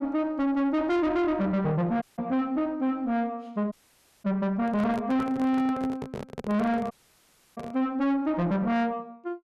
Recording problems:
distortion; soft clipping, signal-to-distortion ratio 7 dB
dropout; at 2 s, at 3.5 s for 0.5 s and at 7 s for 0.5 s
microphone handling noise; from 4.5 to 8 s; peak -3 dB vs average level

